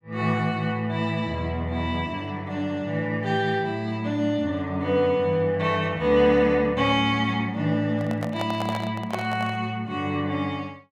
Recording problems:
handling noise; from 8 to 9.5 s; peak -2 dB vs average level

